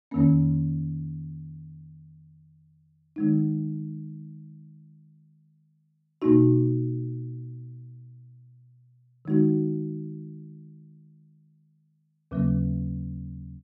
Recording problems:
none

